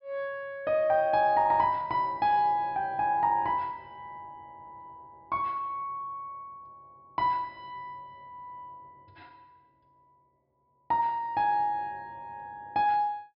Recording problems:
treble missing; nothing above 5.5 kHz

